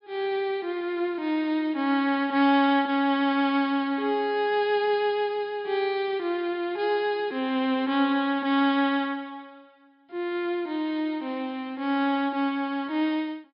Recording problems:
treble cut off; nothing above 5.5 kHz

